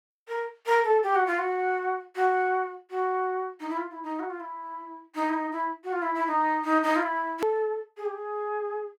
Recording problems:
edit click; at 7.5 s

